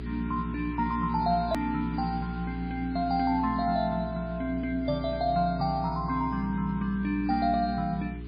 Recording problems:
lossy codec; MP3, log-spectral distance 2 dB, nothing above 4.2 kHz
hum; 60 Hz, harmonics up to 420 Hz, SNR 10 dB
hiss; SNR 26 dB
edit click; at 1.5 s

